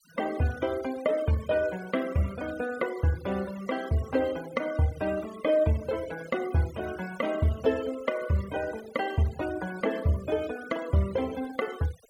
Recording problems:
noise reduction artefacts; signal-to-artefact ratio 18 dB

